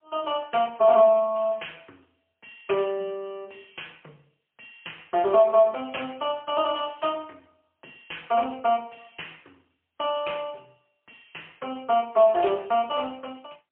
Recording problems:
telephone audio; 320 Hz to 3.2 kHz, AMR-NB, then MP3

